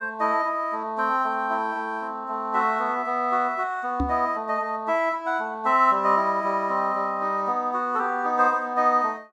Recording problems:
microphone thump; at 4 s; peak +1 dB vs average level

